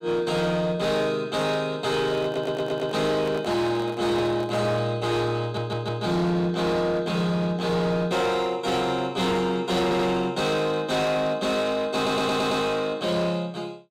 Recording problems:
distorted audio; hard clipping, signal-to-distortion ratio 11 dB
handling noise; from 2 to 4.5 s; peak -7 dB vs average level
audio stuttering; 4 times, first at 2.5 s

